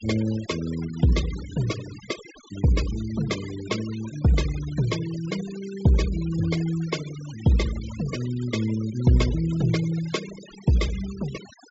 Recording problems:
treble cut off; nothing above 8 kHz
noise reduction artefacts; signal-to-artefact ratio 15 dB

